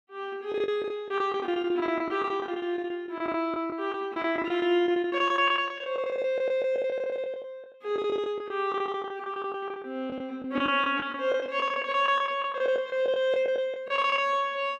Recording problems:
packet loss; 17% of the sound replaced, filled with the last packet

